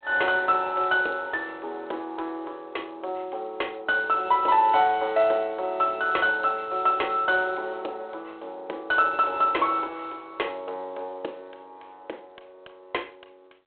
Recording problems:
telephone audio; 300 Hz to 3.7 kHz, G.726

